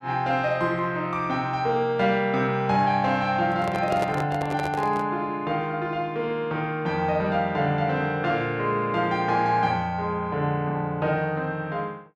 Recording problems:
handling noise; from 3.5 to 5 s; peak -1 dB vs average level

